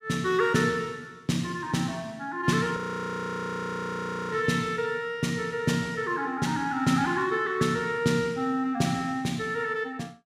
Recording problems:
frozen audio; at 3 s for 1.5 s

